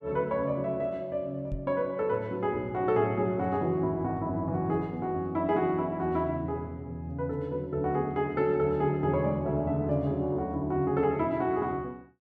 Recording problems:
microphone thump; at 1.5 s; peak -4 dB vs average level

